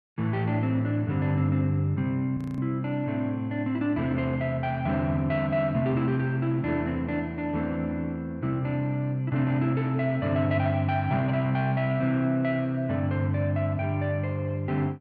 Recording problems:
audio freezing; at 2.5 s

